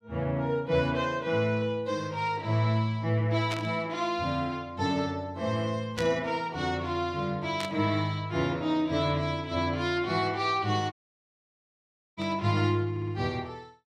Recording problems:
static burst; 4 times, first at 3.5 s; peak -3 dB vs average level
dropout; at 11 s for 1.5 s
audio stuttering; at 13 s

